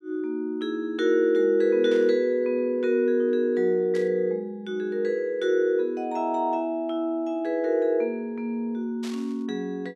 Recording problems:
static burst; at 2 s, at 4 s and at 9 s; peak -12 dB vs average level

